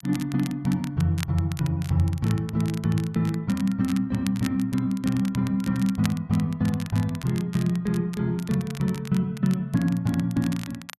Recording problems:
crackle; vinyl, SNR 17 dB

